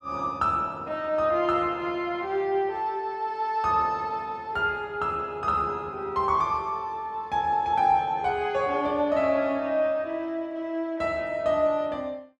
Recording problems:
none

